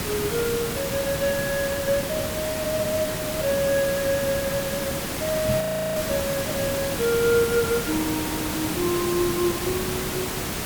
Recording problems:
background hiss; slope -3 dB per octave, SNR 2 dB
microphone bump; at 5.5 s; peak +3 dB vs average level
audio freezing; at 5.5 s

